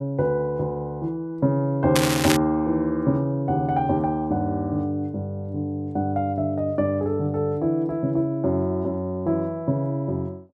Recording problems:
crackling; at 2 s; loose cable, SNR 3 dB

